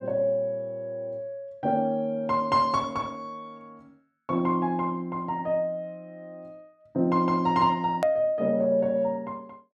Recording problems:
edit click; at 8 s

